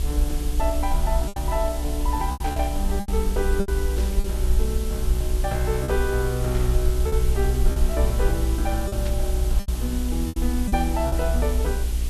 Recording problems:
hum; 60 Hz, harmonics up to 900 Hz, SNR 14 dB
hiss; SNR 9 dB
rumble; below 60 Hz, SNR -2 dB
lost packets; 7% of the sound replaced, filled with repeated pitch periods
static burst; 4 times, first at 2.5 s; peak -6 dB vs average level

